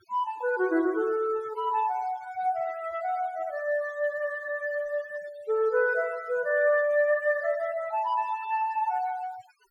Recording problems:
denoising artefacts; signal-to-artefact ratio 22 dB

